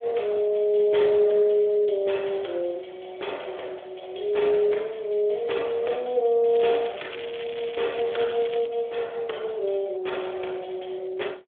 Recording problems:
phone line; 300 Hz to 3.5 kHz, Speex
crackling; from 6.5 to 8.5 s; loose cable, SNR 15 dB

